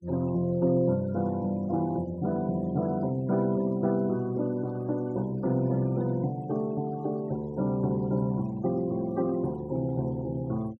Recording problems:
noise reduction artefacts; signal-to-artefact ratio 25 dB

